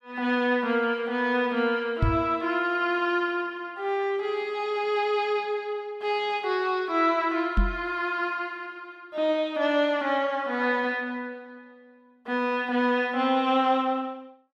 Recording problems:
knock on the microphone; at 2 s and at 7.5 s; peak +5 dB vs average level

